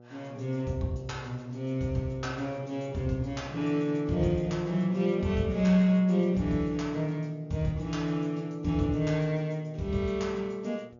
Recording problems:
treble cut off; nothing above 6.9 kHz
hum; 60 Hz, harmonics up to 1.3 kHz, SNR 23 dB

